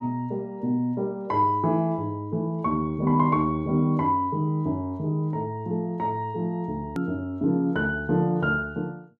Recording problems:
edit click; at 7 s

